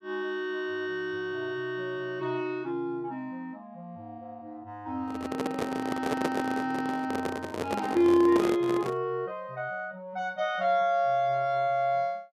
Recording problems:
microphone handling noise; from 5 to 9 s; peak +4 dB vs average level

